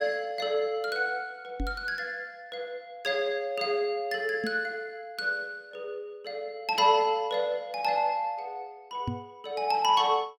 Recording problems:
microphone thump; at 1.5 s, at 4.5 s and at 9 s; peak +1 dB vs average level

